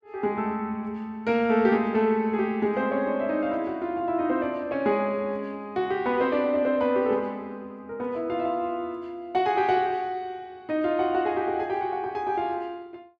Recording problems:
none

